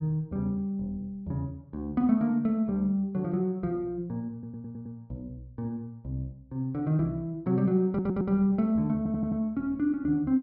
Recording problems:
low-pass filter; nothing above 5.5 kHz
audio stuttering; at 4.5 s, at 8 s and at 9 s

